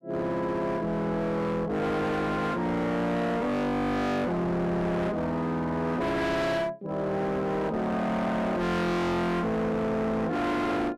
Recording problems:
distortion; hard clipping, uneven, signal-to-distortion ratio 5 dB

